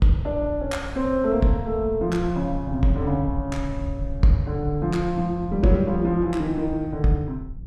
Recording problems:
rumble; below 92 Hz, SNR 11 dB

